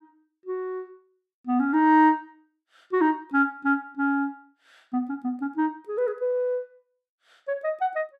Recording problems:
none

